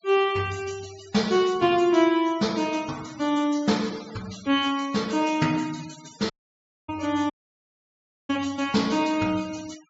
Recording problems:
treble missing; nothing above 8 kHz
denoising artefacts; signal-to-artefact ratio 19 dB
dropout; at 6.5 s for 0.5 s and at 7.5 s for 1 s

